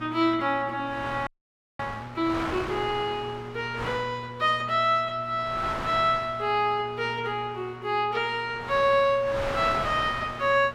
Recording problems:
hum; 60 Hz, harmonics up to 840 Hz, SNR 17 dB
wind noise; below 1.8 kHz, SNR 10 dB
audio freezing; at 1.5 s for 0.5 s

